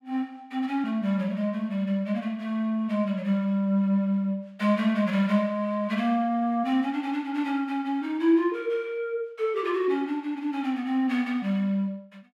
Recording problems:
none

